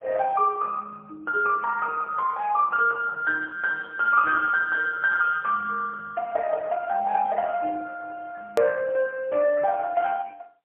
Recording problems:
telephone audio; 320 Hz to 3.2 kHz, AMR-NB, then MP3
click at an edit; at 8.5 s

